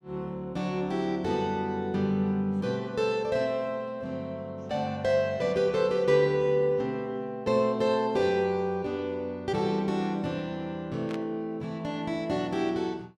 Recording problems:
static burst; at 11 s; peak -10 dB vs average level

